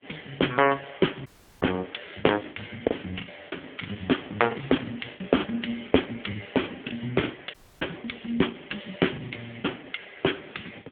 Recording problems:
phone line; 190 Hz to 3.4 kHz, AMR-NB
lost packets; 10% of the sound replaced, filled with the last packet
audio cutting out; at 1.5 s and at 7.5 s

